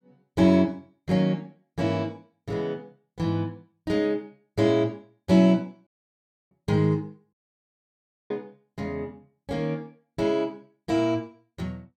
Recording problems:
dropout; at 6 s for 0.5 s and at 7.5 s for 1 s

